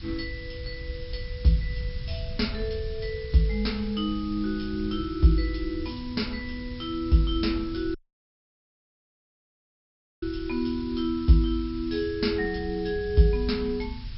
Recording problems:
treble cut off; nothing above 5.4 kHz
background hiss; slope +3 dB per octave, SNR 20 dB
wind on the microphone; below 94 Hz, SNR 12 dB
audio cutting out; at 8 s for 2.5 s

